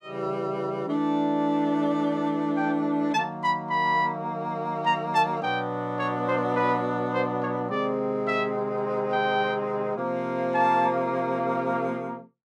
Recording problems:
none

